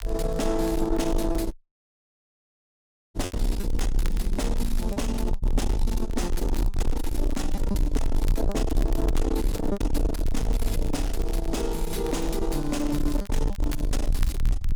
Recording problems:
distorted audio; soft clipping, signal-to-distortion ratio 7 dB
rumble; below 50 Hz, SNR 1 dB
crackling; vinyl, SNR 19 dB
lost packets; 5% of the sound replaced, filled with repeated pitch periods
dropout; at 1.5 s for 1.5 s

